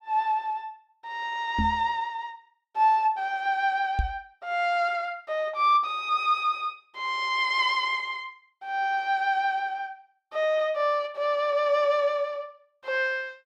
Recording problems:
knock on the microphone; at 1.5 s and at 4 s; peak +2 dB vs average level

